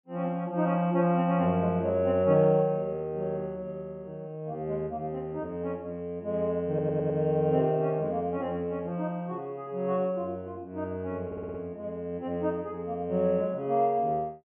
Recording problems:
treble cut off; nothing above 3.3 kHz
stutter; at 6.5 s and at 11 s

